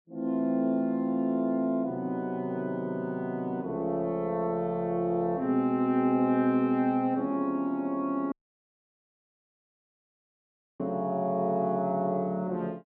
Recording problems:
dropout; at 8.5 s for 2.5 s

